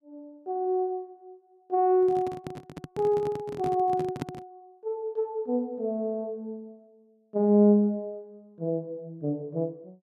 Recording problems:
microphone handling noise; from 2 to 4.5 s; peak -1 dB vs average level

